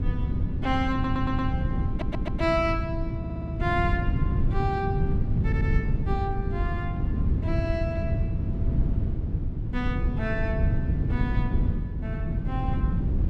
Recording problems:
wind on the microphone; below 150 Hz, SNR -4 dB
audio stuttering; 4 times, first at 1 s

